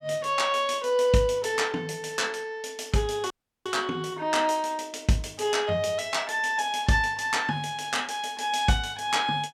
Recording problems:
audio cutting out; at 3.5 s

